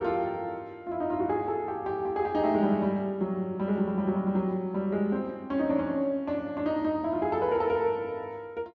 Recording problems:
low-pass filter; nothing above 7.2 kHz

